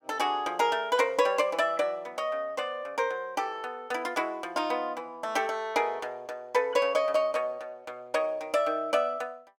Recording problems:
none

